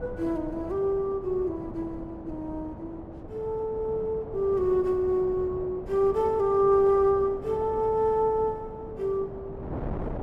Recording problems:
wind on the microphone; below 520 Hz, SNR 13 dB

